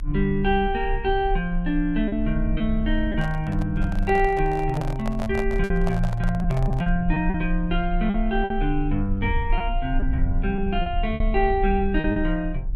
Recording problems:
low-frequency rumble; below 42 Hz, strongest tone 34 Hz, SNR 5 dB
packet loss; 6% of the sound replaced, filled with repeated pitch periods
microphone handling noise; from 3 to 7 s; peak -3 dB vs average level

